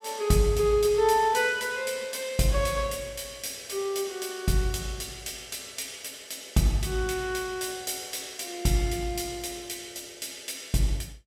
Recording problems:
none

